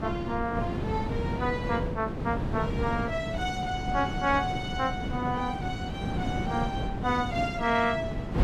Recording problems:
wind on the microphone; below 330 Hz, SNR 3 dB

